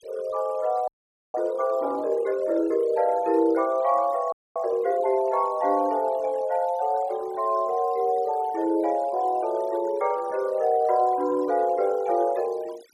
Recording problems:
noise reduction artefacts; signal-to-artefact ratio 24 dB
audio freezing; at 1 s and at 4.5 s

